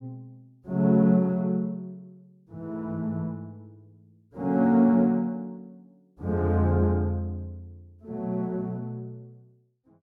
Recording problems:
none

